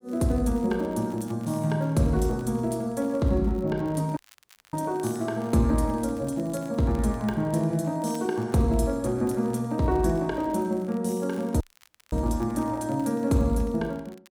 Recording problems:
crackle; vinyl, SNR 29 dB
audio cutting out; at 4 s for 0.5 s and at 12 s for 0.5 s

